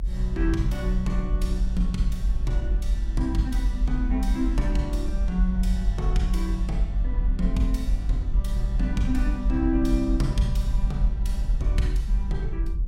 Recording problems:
rumble; below 52 Hz, strongest tone 40 Hz, SNR -3 dB

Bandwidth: 16.5 kHz